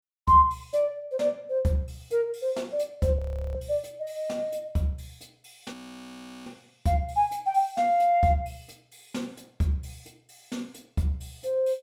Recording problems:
frozen audio; at 3 s and at 5.5 s for 0.5 s

